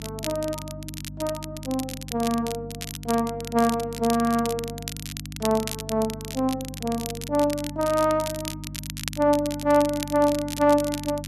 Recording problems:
hum; 50 Hz, harmonics up to 300 Hz, SNR 13 dB
crackle; vinyl, SNR 11 dB

